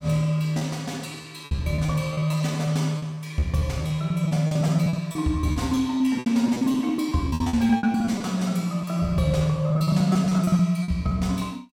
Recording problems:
lost packets; 17% of the sound replaced, filled with repeated pitch periods

